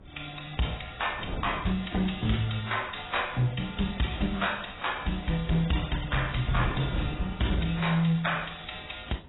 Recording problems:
lossy compression; AAC, then AAC, log-spectral distance 9 dB, nothing above 3.8 kHz
distortion; hard clipping, uneven, signal-to-distortion ratio 11 dB
wind noise; below 360 Hz, SNR 15 dB

